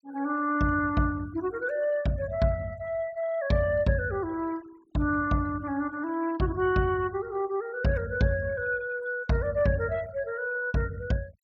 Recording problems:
noise reduction artefacts; signal-to-artefact ratio 24 dB

